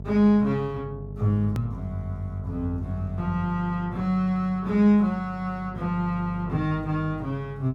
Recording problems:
hum; 50 Hz, harmonics up to 650 Hz, SNR 12 dB
hard cut with a click; at 1.5 s

